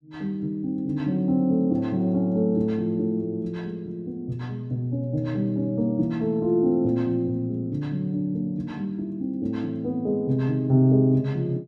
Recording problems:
none

